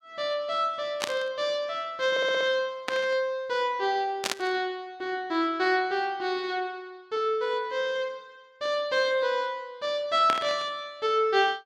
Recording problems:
static burst; 4 times, first at 1 s; peak +4 dB vs average level
stutter; at 2 s

